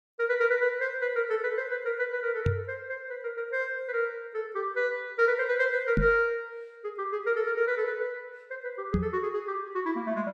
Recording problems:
microphone thump; at 2.5 s, at 6 s and at 9 s; peak +6 dB vs average level

